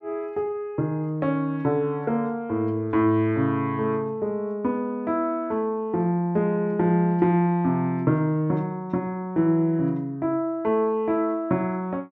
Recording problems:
treble missing; nothing above 8 kHz

